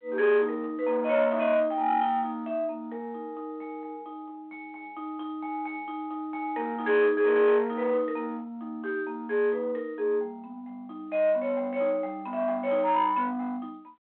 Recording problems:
telephone audio; 430 Hz to 3.9 kHz, G.726
distorted audio; soft clipping, signal-to-distortion ratio 13 dB

